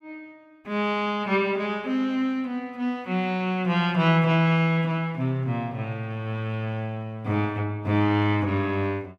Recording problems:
none

